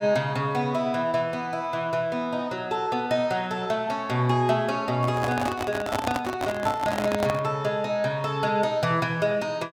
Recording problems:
handling noise; from 5 to 7.5 s; peak +2 dB vs average level

